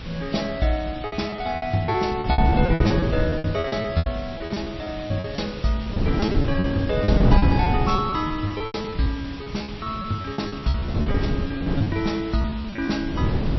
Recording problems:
lossy compression; MP3, log-spectral distance 5 dB, nothing above 5.7 kHz
background hiss; SNR 14 dB
wind on the microphone; below 220 Hz, SNR -1 dB
packet loss; 16% of the sound replaced, filled with repeated pitch periods

